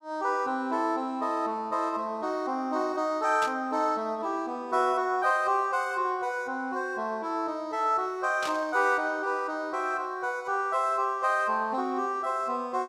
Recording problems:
static burst; at 3.5 s and at 8.5 s; peak -4 dB vs average level

